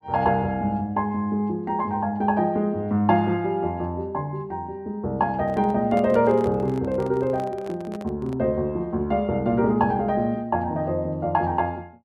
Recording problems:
handling noise; from 5.5 to 8.5 s; peak -8 dB vs average level

